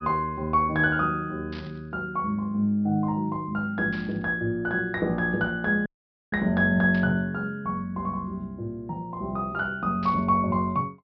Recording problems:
treble missing; nothing above 5.5 kHz
burst of static; 4 times, first at 1.5 s; peak -12 dB vs average level
dropout; at 6 s

